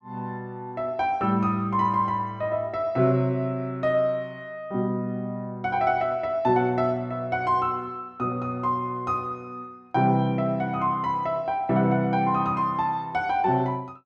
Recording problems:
none

